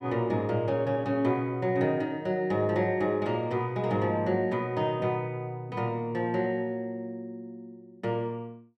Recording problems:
none

